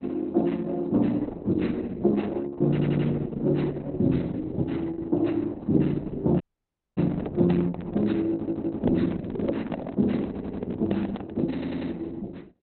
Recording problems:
lossy codec; Opus, log-spectral distance 3 dB, nothing above 4.1 kHz
stutter; 4 times, first at 2.5 s
handling noise; from 6 to 12 s; peak 0 dB vs average level
dropout; at 6.5 s for 0.5 s

